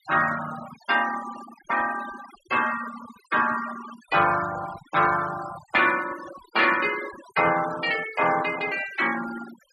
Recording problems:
noise reduction artefacts; signal-to-artefact ratio 13 dB

